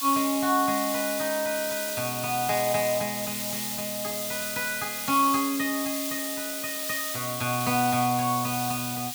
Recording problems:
background hiss; slope +3 dB per octave, SNR 3 dB

